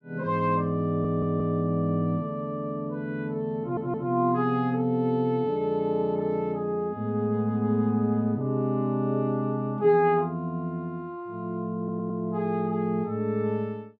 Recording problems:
audio stuttering; at 1 s, at 3.5 s and at 12 s

